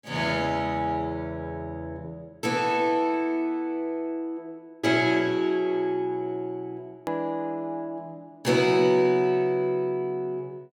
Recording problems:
hard cut with a click; at 7 s

